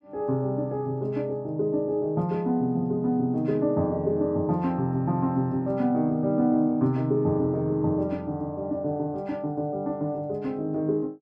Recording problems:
none

